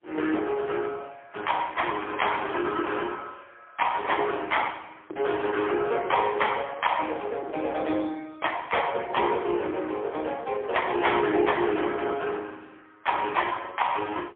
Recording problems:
phone line; 280 Hz to 3.4 kHz, AMR-NB, then MP3

